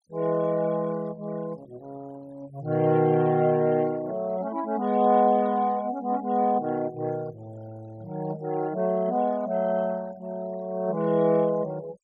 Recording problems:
noise reduction artefacts; signal-to-artefact ratio 26 dB

